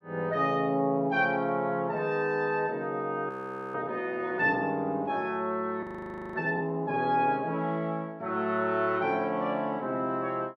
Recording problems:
frozen audio; at 3.5 s and at 6 s for 0.5 s

